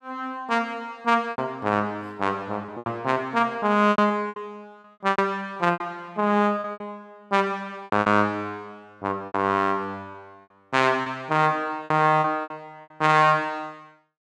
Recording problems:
lost packets; 10% of the sound replaced, filled with repeated pitch periods

